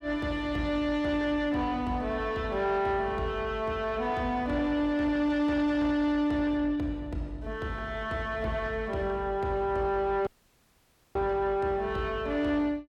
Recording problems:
distorted audio; soft clipping, signal-to-distortion ratio 10 dB
dropout; at 10 s for 1 s

